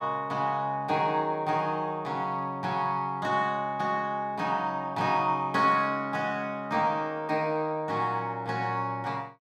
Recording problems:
none

